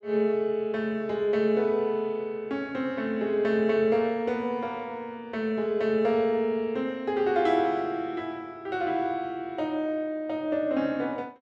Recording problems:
none

